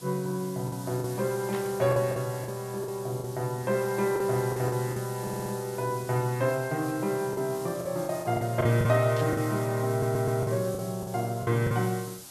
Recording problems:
background hiss; SNR 15 dB
packet loss; 8% of the sound replaced, filled with the last packet
static burst; at 1.5 s and at 9 s; peak -9 dB vs average level
stutter; at 5 s and at 10 s

